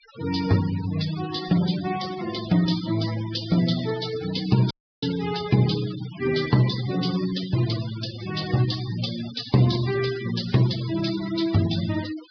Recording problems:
low-pass filter; nothing above 5.5 kHz
noise reduction artefacts; signal-to-artefact ratio 12 dB
dropout; at 4.5 s

